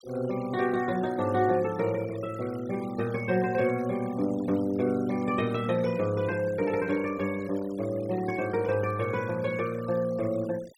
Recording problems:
denoising artefacts; signal-to-artefact ratio 20 dB

